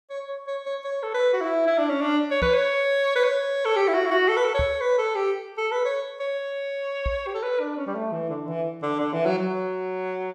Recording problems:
knock on the microphone; at 2.5 s, at 4.5 s and at 7 s; peak -1 dB vs average level

